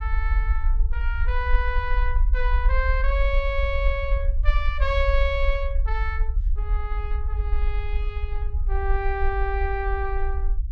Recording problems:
low-frequency rumble; below 52 Hz, SNR -3 dB

